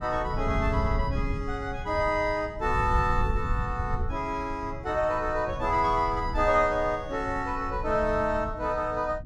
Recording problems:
low-frequency rumble; below 100 Hz, SNR 7 dB

